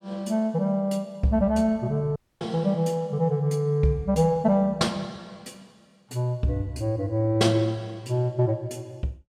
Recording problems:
audio cutting out; at 2 s

